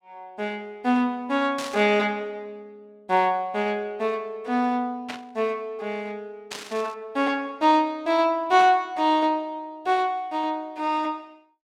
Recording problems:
static burst; 4 times, first at 1.5 s; peak -5 dB vs average level

